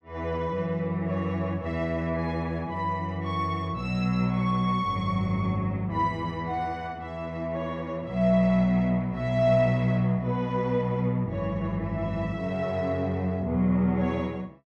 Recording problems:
none

